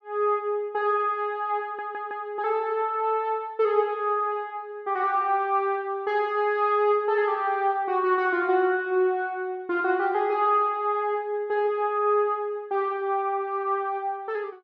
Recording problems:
audio stuttering; at 1.5 s

